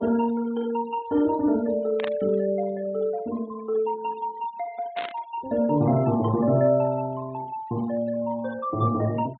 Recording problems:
treble cut off; nothing above 4 kHz
denoising artefacts; signal-to-artefact ratio 23 dB
static burst; at 2 s and at 5 s; peak -4 dB vs average level

